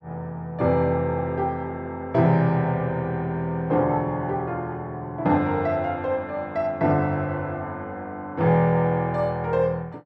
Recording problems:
none

